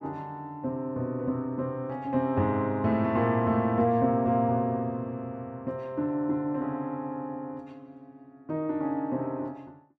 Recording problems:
none

